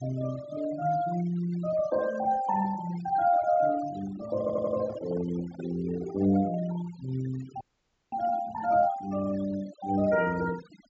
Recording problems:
treble missing; nothing above 7.6 kHz
noise reduction artefacts; signal-to-artefact ratio 16 dB
microphone handling noise; from 4 to 7 s; peak -13 dB vs average level
stutter; at 4.5 s
audio freezing; at 7.5 s for 0.5 s

